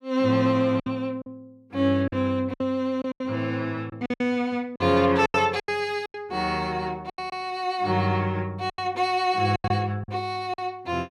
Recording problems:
lost packets; 10% of the sound replaced, filled with silence

